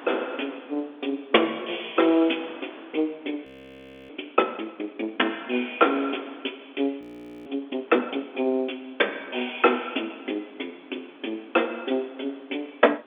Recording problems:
phone line; 220 Hz to 3.6 kHz, G.711
wind on the microphone; below 1.6 kHz, SNR 22 dB
audio freezing; at 3.5 s for 0.5 s and at 7 s

